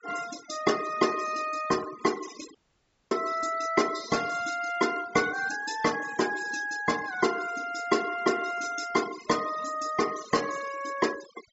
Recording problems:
low-pass filter; nothing above 8 kHz
noise reduction artefacts; signal-to-artefact ratio 13 dB
dropout; at 2.5 s for 0.5 s

